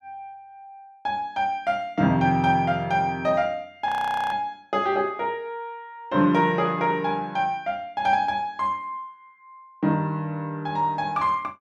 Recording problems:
frozen audio; at 4 s

